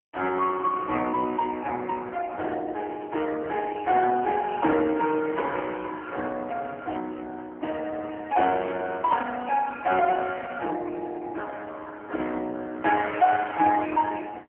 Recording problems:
telephone audio; 260 Hz to 2 kHz, AMR-NB

